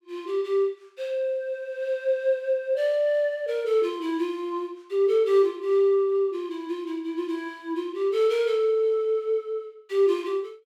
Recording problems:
none

